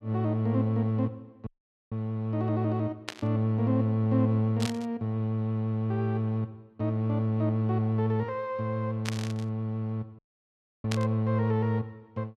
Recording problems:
dropout; at 1.5 s and at 10 s for 0.5 s
static burst; 4 times, first at 3 s; peak -1 dB vs average level

